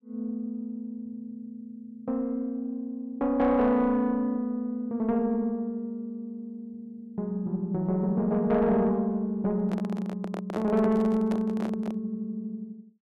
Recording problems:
distortion; soft clipping, signal-to-distortion ratio 10 dB
handling noise; from 9.5 to 12 s; peak -1 dB vs average level

